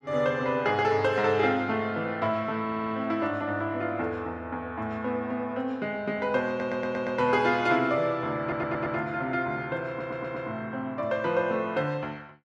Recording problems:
stutter; 4 times, first at 2.5 s

